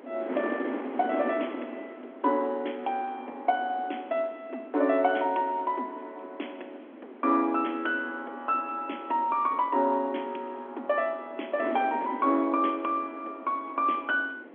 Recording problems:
phone line; 220 Hz to 3.4 kHz, G.711
wind on the microphone; below 640 Hz, SNR 12 dB

